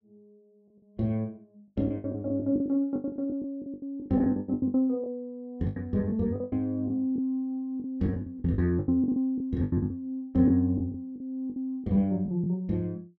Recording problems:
lost packets; 16% of the sound replaced, filled with the last packet

